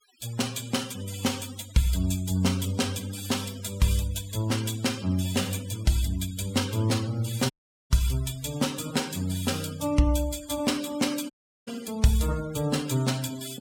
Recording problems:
noise reduction artefacts; signal-to-artefact ratio 16 dB
dropout; at 7.5 s and at 11 s

